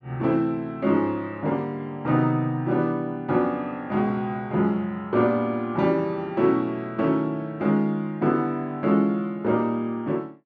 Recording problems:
none

